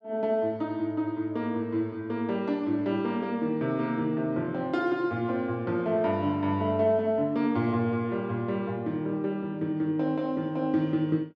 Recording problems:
none

